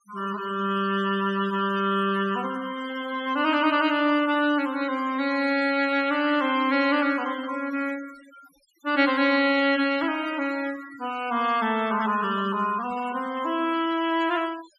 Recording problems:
noise reduction artefacts; signal-to-artefact ratio 17 dB

